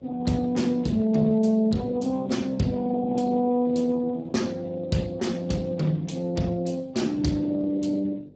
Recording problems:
lossy compression; Speex, log-spectral distance 3 dB, nothing above 7.6 kHz
hum; 50 Hz, harmonics up to 650 Hz, SNR 27 dB

